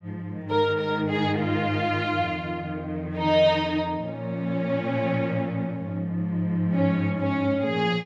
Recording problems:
none

